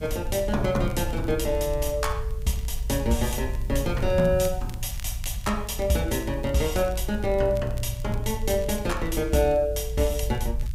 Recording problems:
hiss; slope +1 dB per octave, SNR 28 dB
low-frequency rumble; below 64 Hz, SNR 7 dB
crackling; vinyl, SNR 25 dB

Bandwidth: 15.5 kHz